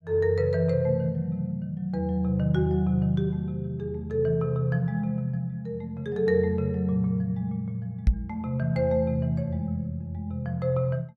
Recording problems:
knock on the microphone; at 8 s; peak +9 dB vs average level

